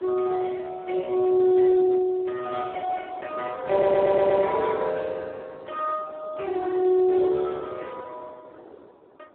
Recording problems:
phone line; 240 Hz to 2.5 kHz, Speex
wind noise; below 700 Hz, SNR 22 dB
audio stuttering; at 3.5 s

